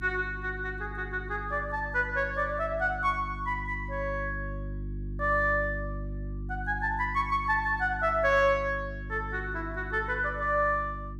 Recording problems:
hum; 50 Hz, harmonics up to 350 Hz, SNR 10 dB

